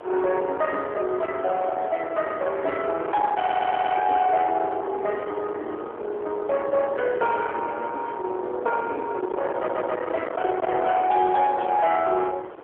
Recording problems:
phone line; 320 Hz to 3.3 kHz, AMR-NB
distorted audio; soft clipping, signal-to-distortion ratio 9 dB
wind noise; below 950 Hz, SNR 10 dB
audio stuttering; at 3.5 s and at 9.5 s

